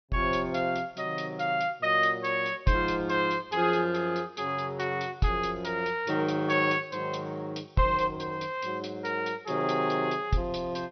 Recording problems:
treble cut off; nothing above 5.9 kHz

